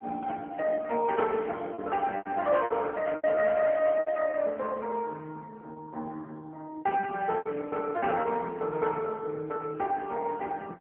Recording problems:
telephone audio; 220 Hz to 3.1 kHz, AMR-NB
packet loss; 7% of the sound replaced, filled with repeated pitch periods

